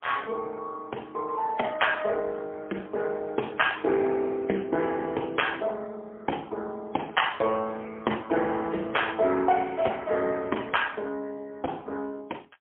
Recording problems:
phone line; 260 Hz to 3.4 kHz, AMR-NB, then MP3

